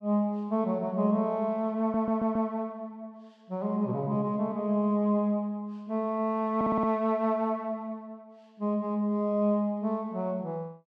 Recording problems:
audio stuttering; at 2 s and at 6.5 s

